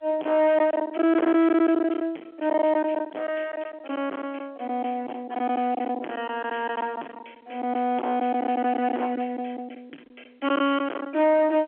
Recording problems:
telephone audio; 260 Hz to 3.4 kHz, G.711
distorted audio; soft clipping, signal-to-distortion ratio 11 dB
lost packets; 10% of the sound replaced, filled with silence

